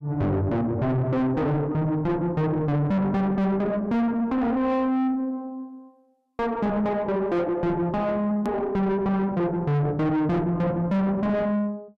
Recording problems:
distortion; soft clipping, signal-to-distortion ratio 5 dB
hard cut with a click; at 8.5 s

